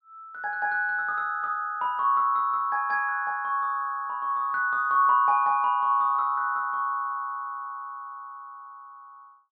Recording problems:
treble cut off; nothing above 5.5 kHz

